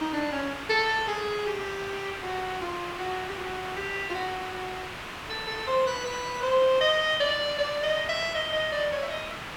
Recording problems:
background hiss; SNR 9 dB

